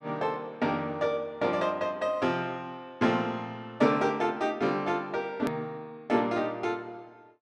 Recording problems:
click at an edit; at 5.5 s

